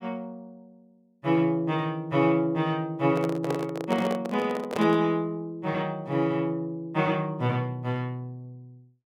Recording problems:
handling noise; from 3 to 5 s; peak 0 dB vs average level

